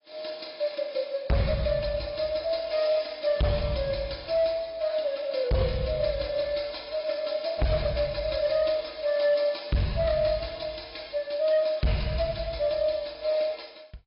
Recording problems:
treble cut off; nothing above 5.2 kHz
codec artefacts; AAC, log-spectral distance 8 dB
distorted audio; hard clipping, signal-to-distortion ratio 12 dB

